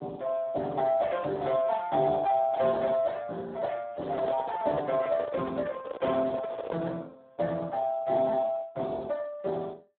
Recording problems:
telephone audio; 220 Hz to 2.1 kHz, Speex
microphone handling noise; from 4 to 7 s; peak -2 dB vs average level

